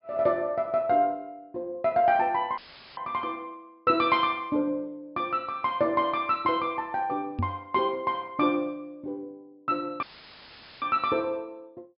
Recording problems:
treble cut off; nothing above 5.5 kHz
audio cutting out; at 2.5 s and at 10 s for 1 s; filled with static
microphone bump; at 7.5 s; peak +1 dB vs average level

